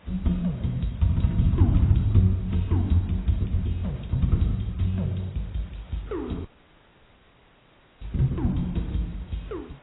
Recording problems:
lossy compression; AAC, log-spectral distance 5 dB, nothing above 3.7 kHz
background hiss; SNR 28 dB
dropout; at 6.5 s for 1.5 s

